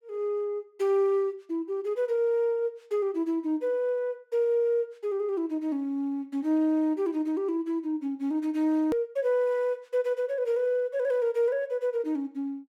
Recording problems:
click at an edit; at 9 s

